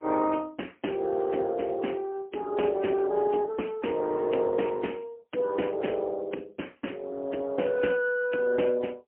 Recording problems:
telephone audio; 240 Hz to 3.1 kHz, AMR-NB, then MP3

